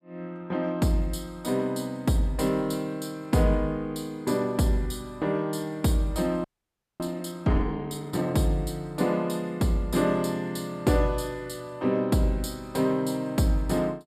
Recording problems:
frozen audio; at 6.5 s for 0.5 s

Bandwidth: 14.5 kHz